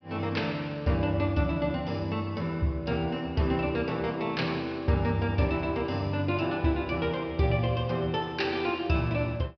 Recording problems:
treble cut off; nothing above 5.5 kHz

